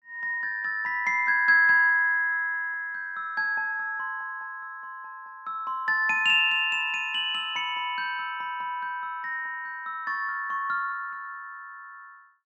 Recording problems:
none

